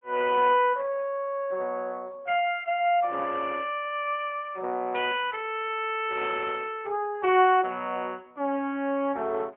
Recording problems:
phone line; 240 Hz to 3.3 kHz, AMR-NB, then MP3

